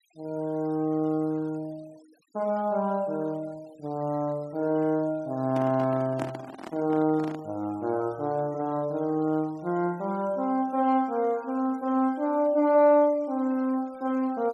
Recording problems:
noise reduction artefacts; signal-to-artefact ratio 28 dB
microphone handling noise; from 5.5 to 7.5 s; peak -3 dB vs average level

